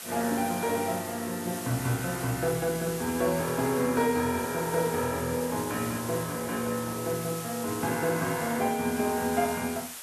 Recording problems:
hiss; SNR 9 dB

